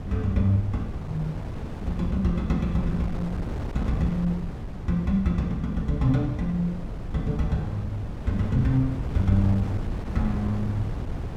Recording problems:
wind noise; below 210 Hz, SNR 7 dB

